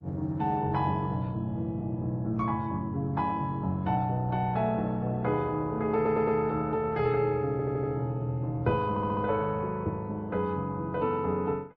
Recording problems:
lossy codec; MP3, then Opus, log-spectral distance 2 dB
stutter; at 6 s, at 7.5 s and at 9 s

